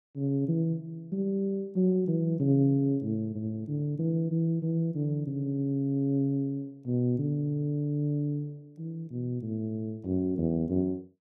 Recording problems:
none

